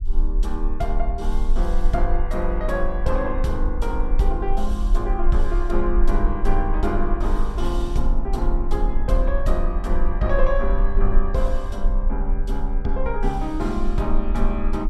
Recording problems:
rumble; below 38 Hz, strongest tone 18 Hz, SNR -1 dB

